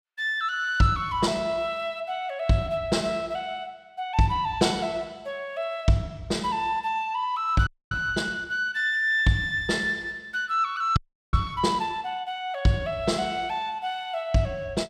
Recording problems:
audio freezing; at 7.5 s and at 11 s

